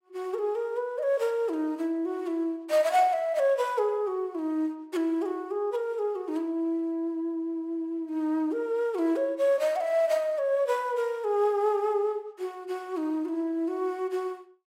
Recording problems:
none

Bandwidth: 16 kHz